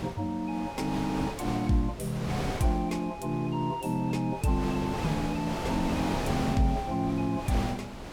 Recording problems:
wind noise; below 1.1 kHz, SNR 6 dB

